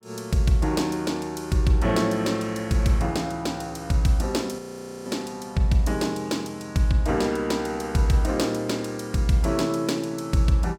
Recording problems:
audio freezing; at 4.5 s

